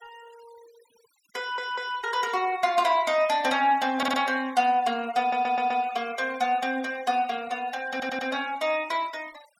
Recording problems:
noise reduction artefacts; signal-to-artefact ratio 21 dB
audio stuttering; 4 times, first at 1.5 s

